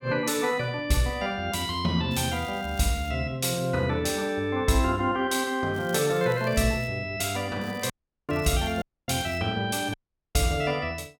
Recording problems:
crackling; from 2 to 3 s, from 5.5 to 7 s and from 7.5 to 9.5 s; loose cable, SNR 23 dB
audio cutting out; at 8 s, at 9 s and at 10 s

